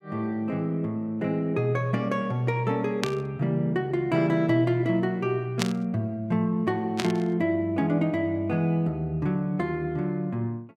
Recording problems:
static burst; at 3 s, at 5.5 s and at 7 s; peak +3 dB vs average level

